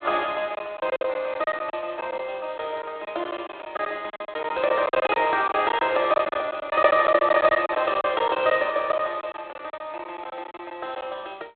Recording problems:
telephone audio; 240 Hz to 3.5 kHz, G.726
packet loss; 12% of the sound replaced, filled with silence

